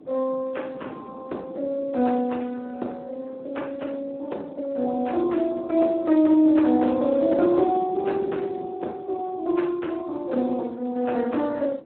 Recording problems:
telephone audio; 170 Hz to 4 kHz, Speex
wind noise; below 450 Hz, SNR 19 dB

